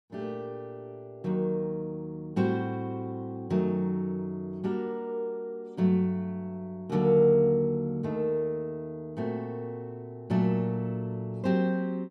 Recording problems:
none

